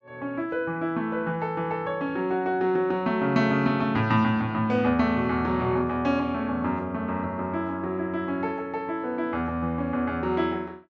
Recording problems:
low-pass filter; nothing above 8 kHz

